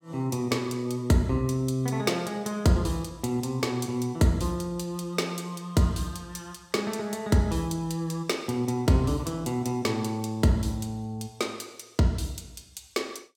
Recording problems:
none

